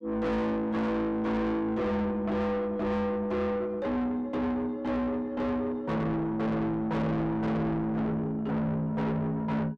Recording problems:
distortion; soft clipping, signal-to-distortion ratio 5 dB

